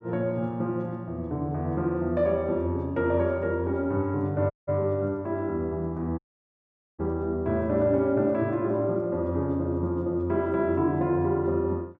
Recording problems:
dropout; at 4.5 s and at 6 s for 1 s

